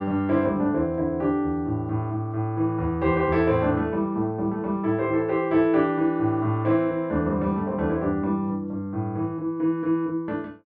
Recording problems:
none

